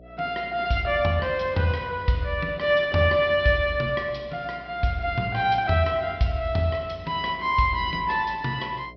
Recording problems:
treble cut off; nothing above 5.5 kHz
hum; 60 Hz, harmonics up to 720 Hz, SNR 23 dB

